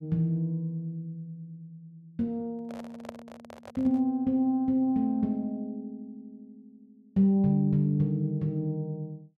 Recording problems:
handling noise; from 2.5 to 4 s; peak -9 dB vs average level

